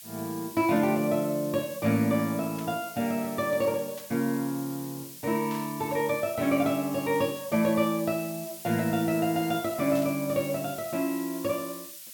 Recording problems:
hiss; slope +6 dB per octave, SNR 13 dB
static burst; 4 times, first at 2.5 s; peak -13 dB vs average level

